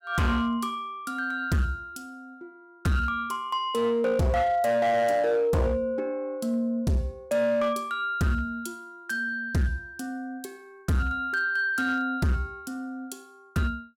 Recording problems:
distorted audio; hard clipping, signal-to-distortion ratio 10 dB

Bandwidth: 16.5 kHz